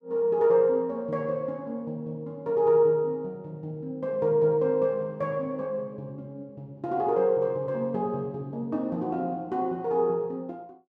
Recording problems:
none

